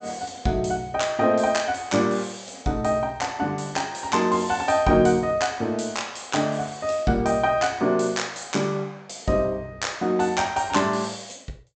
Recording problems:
treble missing; nothing above 8 kHz

